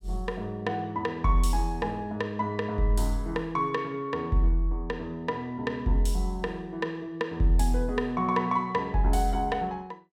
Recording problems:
none

